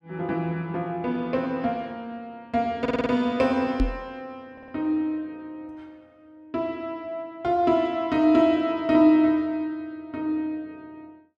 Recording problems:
audio stuttering; at 3 s and at 4.5 s
microphone thump; at 4 s; peak +3 dB vs average level

